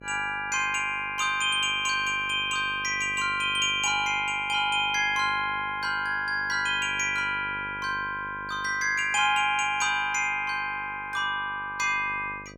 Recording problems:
mains hum; 50 Hz, harmonics up to 1.2 kHz, SNR 22 dB

